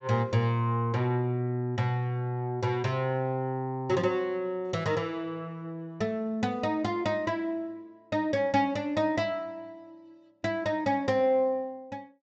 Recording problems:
treble cut off; nothing above 8 kHz

